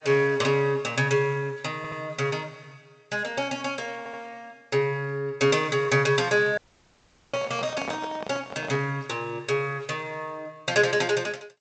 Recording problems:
lossy compression; G.722, log-spectral distance 3 dB, nothing above 7.6 kHz
stutter; at 2 s and at 4 s
dropout; at 6.5 s for 1 s
microphone handling noise; from 7.5 to 9 s; peak -4 dB vs average level

